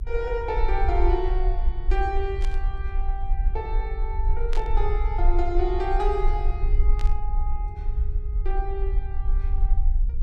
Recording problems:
rumble; below 46 Hz, SNR -3 dB
static burst; at 2.5 s, at 4.5 s and at 7 s; peak -4 dB vs average level

